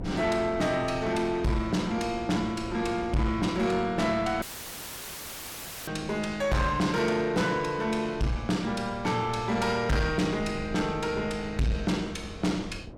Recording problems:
distortion; soft clipping, signal-to-distortion ratio 8 dB
wind noise; below 320 Hz, SNR 15 dB
dropout; at 4.5 s for 1.5 s; filled with static

